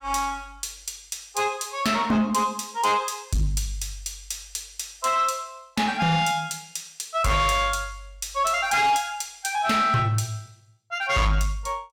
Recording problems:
distorted audio; soft clipping, signal-to-distortion ratio 10 dB

